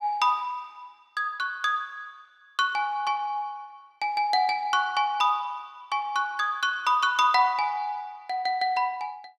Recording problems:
none

